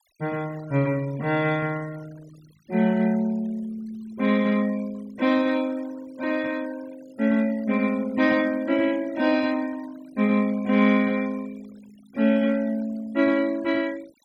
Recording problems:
noise reduction artefacts; signal-to-artefact ratio 24 dB

